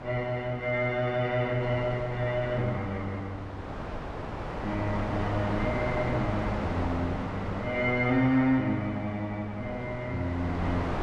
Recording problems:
wind noise; below 1 kHz, SNR 7 dB

